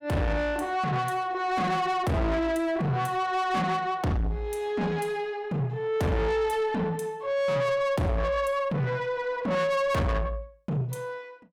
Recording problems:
distortion; soft clipping, signal-to-distortion ratio 7 dB

